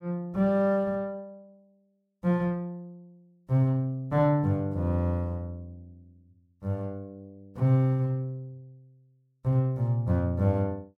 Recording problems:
none

